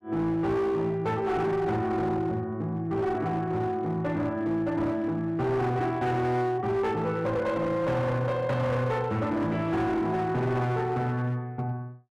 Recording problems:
distorted audio; hard clipping, signal-to-distortion ratio 10 dB

